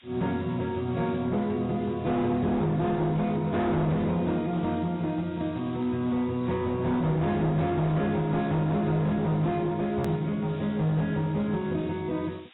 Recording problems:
lossy codec; AAC, log-spectral distance 6 dB, nothing above 20.1 kHz
distorted audio; hard clipping, signal-to-distortion ratio 10 dB
hiss; SNR 27 dB
hard cut with a click; at 10 s

